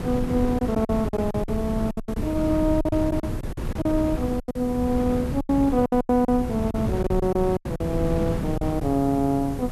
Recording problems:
background hiss; slope +4 dB per octave, SNR 25 dB
wind noise; below 250 Hz, SNR 6 dB
packet loss; 12% of the sound replaced, filled with silence

